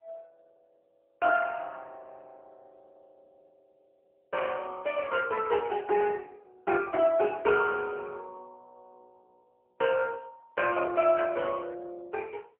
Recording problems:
phone line; 300 Hz to 2.9 kHz, AMR-NB

